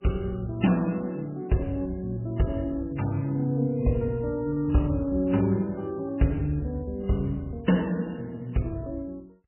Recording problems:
codec artefacts; MP3, log-spectral distance 2 dB, nothing above 3 kHz

